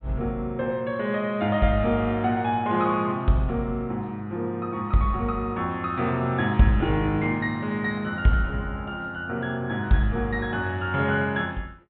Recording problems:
low-pass filter; nothing above 4 kHz

